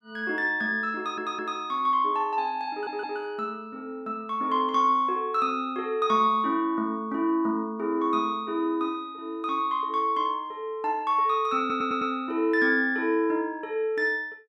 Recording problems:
audio stuttering; at 1 s, at 2.5 s and at 12 s

